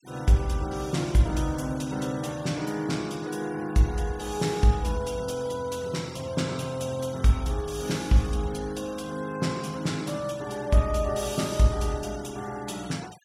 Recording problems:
denoising artefacts; signal-to-artefact ratio 21 dB

